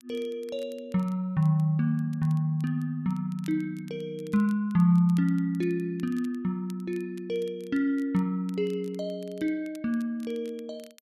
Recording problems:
crackling; vinyl, SNR 29 dB

